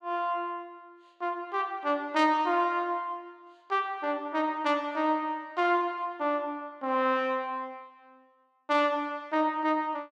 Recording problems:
none

